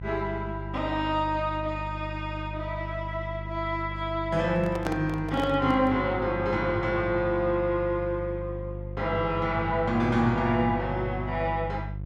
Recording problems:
mains hum; 50 Hz, harmonics up to 400 Hz, SNR 9 dB
microphone handling noise; from 4.5 to 6 s; peak -1 dB vs average level

